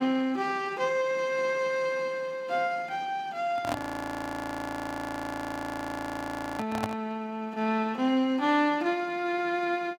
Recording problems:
microphone handling noise; from 3.5 to 7 s; peak +2 dB vs average level
audio freezing; at 4 s for 3 s

